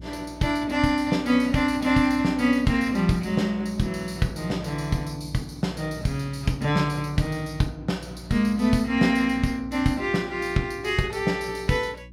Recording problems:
mains hum; 60 Hz, harmonics up to 360 Hz, SNR 19 dB

